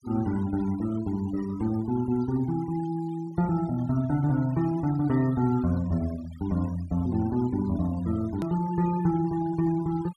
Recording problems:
denoising artefacts; signal-to-artefact ratio 21 dB
click at an edit; at 8.5 s

